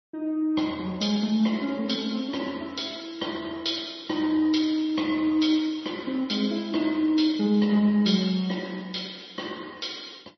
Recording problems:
codec artefacts; MP3, then MP3, log-spectral distance 5 dB, nothing above 5.8 kHz

